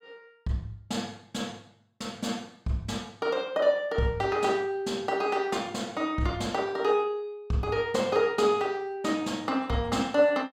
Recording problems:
none

